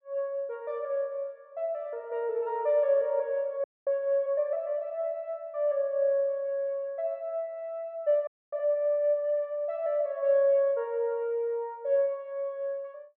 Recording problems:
frozen audio; at 3.5 s and at 8.5 s

